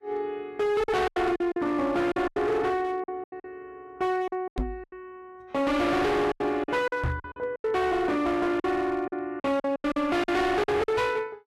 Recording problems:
lossy codec; Vorbis, log-spectral distance 2 dB, nothing above 13.1 kHz
distorted audio; hard clipping, signal-to-distortion ratio 7 dB
lost packets; 13% of the sound replaced, filled with silence
microphone bump; at 4.5 s and at 7 s; peak +1 dB vs average level

